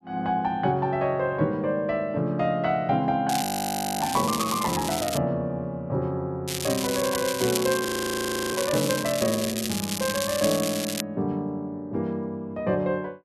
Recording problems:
crackling; from 3.5 to 5 s and from 6.5 to 11 s; loose cable, SNR 5 dB
audio freezing; at 3.5 s for 0.5 s and at 8 s for 0.5 s

